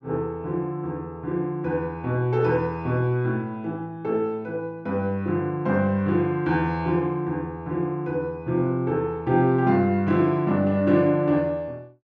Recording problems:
none

